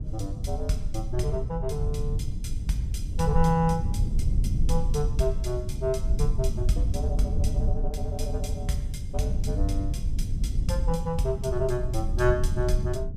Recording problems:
rumble; below 86 Hz, SNR 0 dB

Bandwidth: 15 kHz